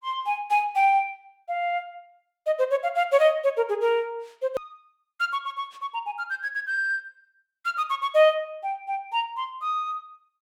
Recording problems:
hard cut with a click; at 4.5 s

